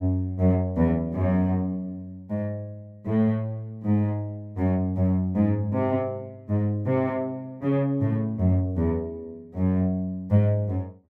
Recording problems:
none

